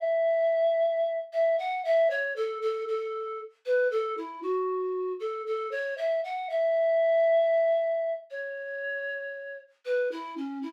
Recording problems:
none

